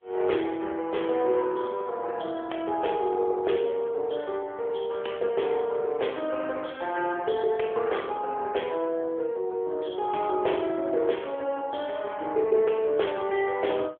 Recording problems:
telephone audio; 320 Hz to 3.4 kHz, AMR-NB

